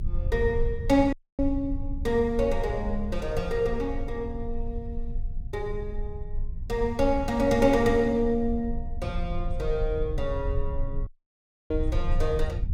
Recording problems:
low-frequency rumble; below 64 Hz, strongest tone 22 Hz, SNR 7 dB
dropout; at 1 s and at 11 s for 0.5 s

